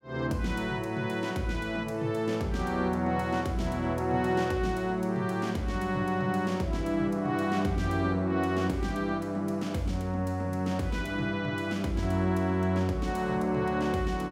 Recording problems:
none

